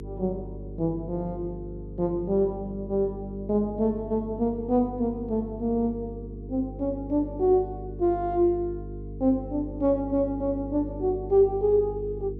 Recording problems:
hum; 50 Hz, harmonics up to 450 Hz, SNR 12 dB

